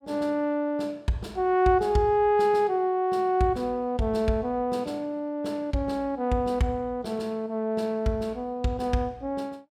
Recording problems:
none

